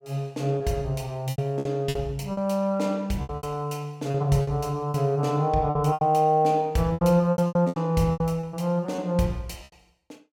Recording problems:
packet loss; 12% of the sound replaced, filled with repeated pitch periods

